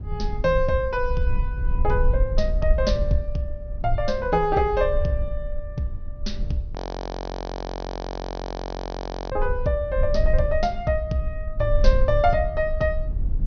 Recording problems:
low-pass filter; nothing above 6.3 kHz
low-frequency rumble; below 54 Hz, SNR 3 dB
frozen audio; at 7 s for 2.5 s

